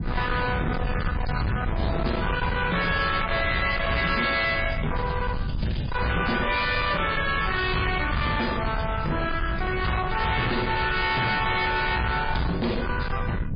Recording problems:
codec artefacts; MP3, log-spectral distance 6 dB, nothing above 4.1 kHz
distorted audio; hard clipping, signal-to-distortion ratio 6 dB
low-frequency rumble; below 490 Hz, SNR 5 dB

